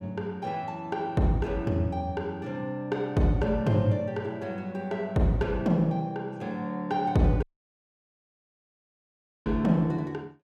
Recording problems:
dropout; at 7.5 s for 2 s

